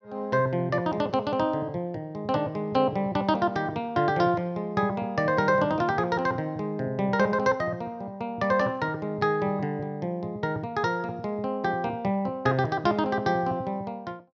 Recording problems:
none

